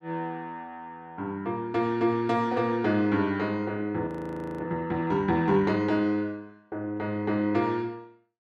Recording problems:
audio freezing; at 4 s for 0.5 s

